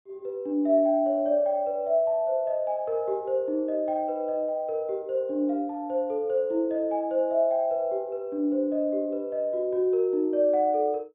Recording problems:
low-pass filter; nothing above 4 kHz

